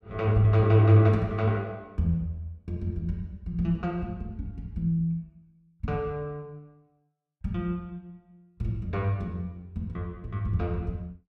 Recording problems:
none

